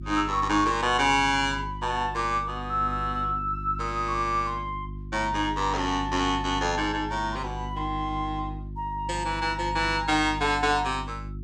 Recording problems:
mains hum; 50 Hz, harmonics up to 350 Hz, SNR 11 dB

